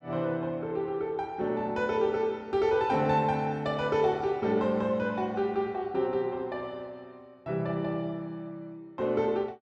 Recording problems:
none

